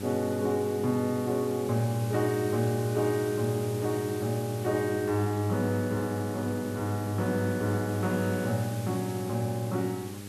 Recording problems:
hum; 50 Hz, harmonics up to 900 Hz, SNR 11 dB
background hiss; slope 0 dB per octave, SNR 16 dB

